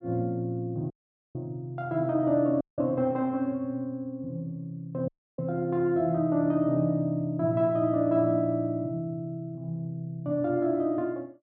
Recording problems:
dropout; at 1 s, at 2.5 s and at 5 s

